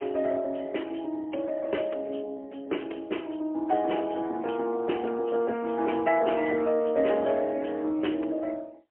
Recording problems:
telephone audio; 260 Hz to 3.1 kHz, AMR-NB, then MP3

